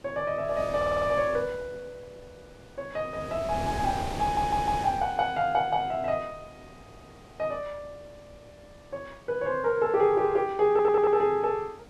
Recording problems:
wind on the microphone; below 870 Hz, SNR 14 dB
audio stuttering; at 1 s, at 4 s and at 11 s

